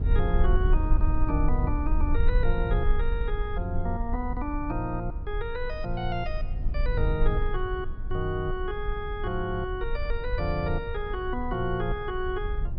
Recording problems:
treble missing; nothing above 5.5 kHz
rumble; below 54 Hz, strongest tone 22 Hz, SNR -1 dB

